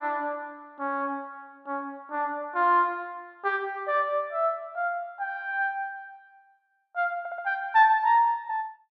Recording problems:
audio stuttering; at 7 s

